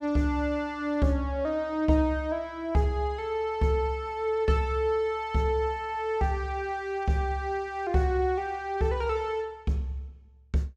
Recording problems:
none

